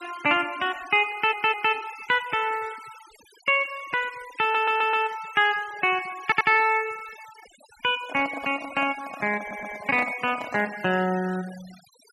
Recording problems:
noise reduction artefacts; signal-to-artefact ratio 19 dB
stutter; 4 times, first at 1 s
handling noise; from 8 to 11 s; peak -6 dB vs average level

